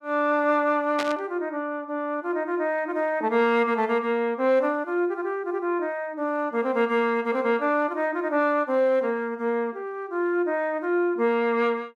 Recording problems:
static burst; at 1 s; peak -2 dB vs average level

